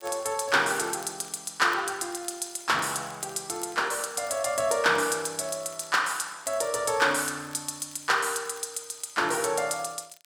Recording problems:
crackle; vinyl, SNR 26 dB

